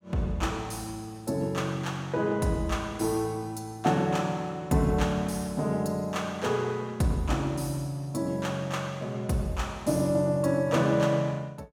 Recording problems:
none

